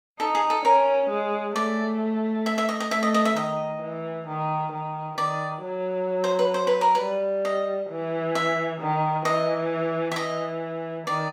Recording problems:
none

